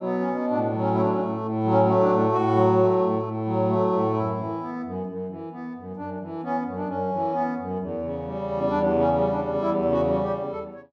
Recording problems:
none

